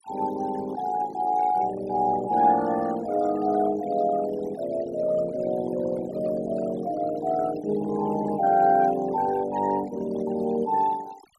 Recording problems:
denoising artefacts; signal-to-artefact ratio 18 dB

